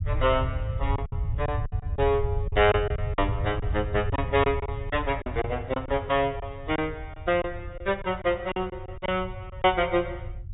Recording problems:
low-pass filter; nothing above 4 kHz
low-frequency rumble; below 100 Hz, SNR 6 dB
lost packets; 9% of the sound replaced, filled with silence

